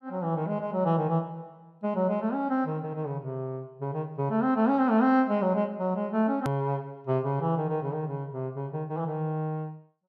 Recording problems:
edit click; at 6.5 s

